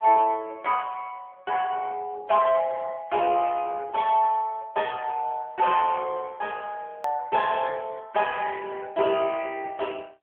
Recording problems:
phone line; 240 Hz to 3.3 kHz, AMR-NB
edit click; at 7 s

